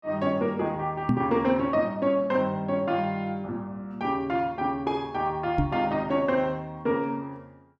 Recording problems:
microphone thump; at 1 s and at 5.5 s; peak +6 dB vs average level

